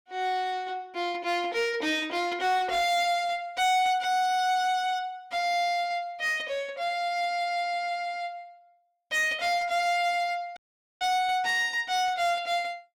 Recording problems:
distortion; hard clipping, uneven, signal-to-distortion ratio 11 dB
audio cutting out; at 11 s

